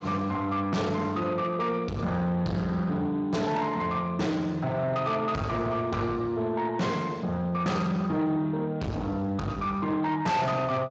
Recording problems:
codec artefacts; Speex, log-spectral distance 2 dB
distorted audio; soft clipping, signal-to-distortion ratio 8 dB

